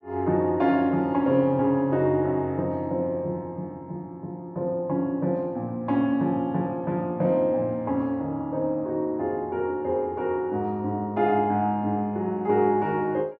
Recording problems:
none

